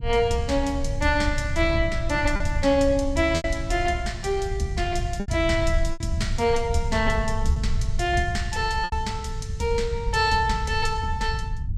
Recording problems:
low-frequency rumble; below 90 Hz, SNR 5 dB
lost packets; 3% of the sound replaced, filled with repeated pitch periods

